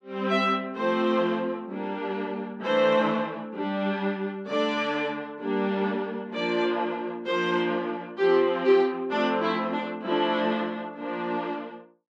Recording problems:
none

